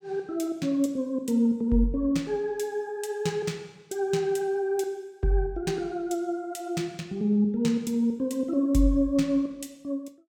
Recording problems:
none

